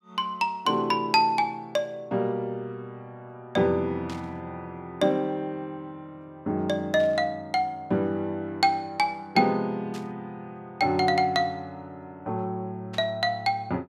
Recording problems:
burst of static; 4 times, first at 4 s; peak -12 dB vs average level

